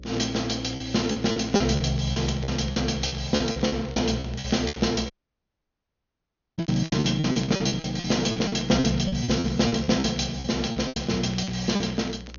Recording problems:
treble missing; nothing above 6.7 kHz
hum; 60 Hz, harmonics up to 540 Hz, SNR 19 dB
crackle; vinyl, SNR 21 dB
lost packets; 16% of the sound replaced, filled with repeated pitch periods
dropout; at 5 s for 1.5 s

